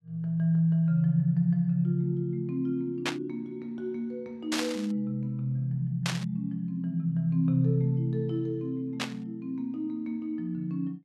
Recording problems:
burst of static; 4 times, first at 3 s; peak +3 dB vs average level

